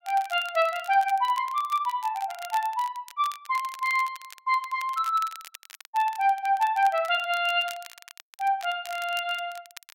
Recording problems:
crackle; vinyl, SNR 19 dB

